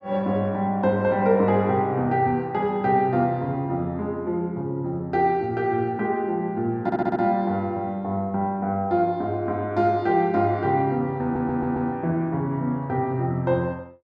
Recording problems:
stutter; at 7 s and at 11 s

